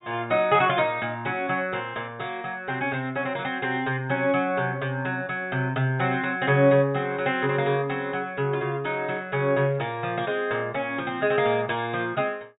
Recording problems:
low-pass filter; nothing above 4 kHz

